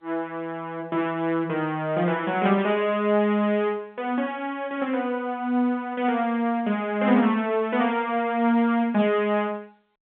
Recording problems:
phone line; 220 Hz to 3.5 kHz, G.711

